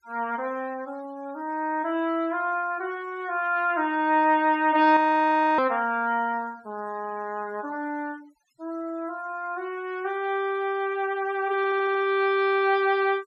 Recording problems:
noise reduction artefacts; signal-to-artefact ratio 28 dB
frozen audio; at 5 s for 0.5 s
stutter; at 12 s

